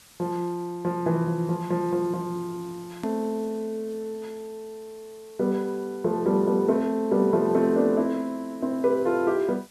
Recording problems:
background hiss; slope 0 dB per octave, SNR 26 dB
click at an edit; at 3 s

